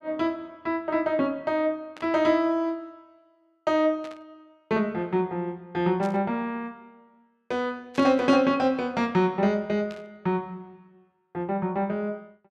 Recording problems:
burst of static; 5 times, first at 2 s; peak -13 dB vs average level

